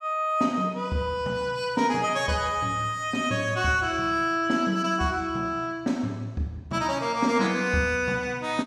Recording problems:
none

